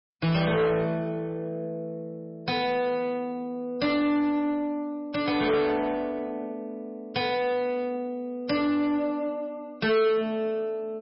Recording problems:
codec artefacts; MP3, log-spectral distance 2 dB, nothing above 5.2 kHz
distortion; soft clipping, signal-to-distortion ratio 7 dB

